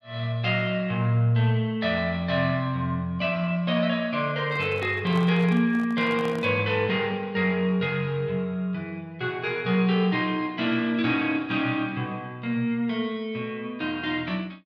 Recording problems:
microphone handling noise; from 4.5 to 6.5 s; peak -9 dB vs average level

